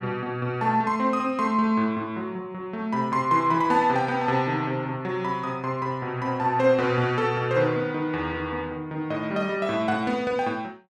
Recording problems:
none

